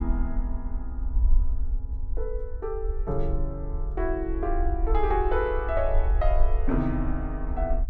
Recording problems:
rumble; below 52 Hz, SNR 0 dB

